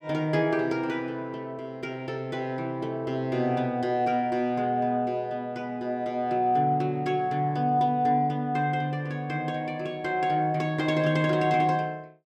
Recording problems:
none

